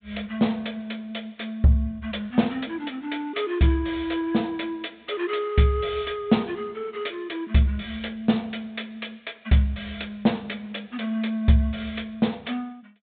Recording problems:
treble missing; nothing above 4 kHz

